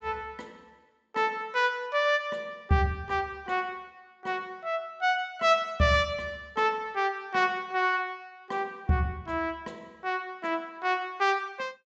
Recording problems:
treble missing; nothing above 8 kHz

